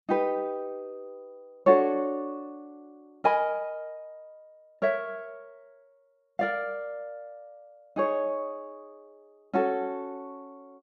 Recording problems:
none

